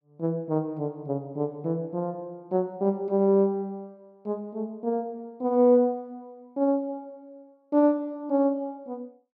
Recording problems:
none

